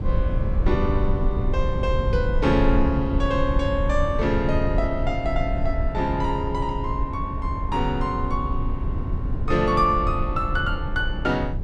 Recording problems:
rumble; below 88 Hz, SNR 2 dB

